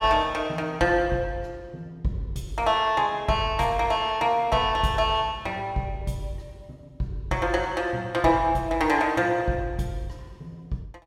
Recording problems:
none

